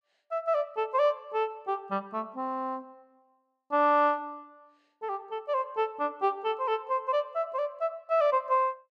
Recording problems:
none

